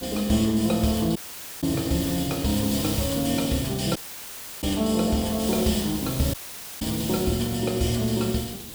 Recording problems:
background hiss; SNR 8 dB
audio cutting out; at 1 s, at 4 s for 0.5 s and at 6.5 s

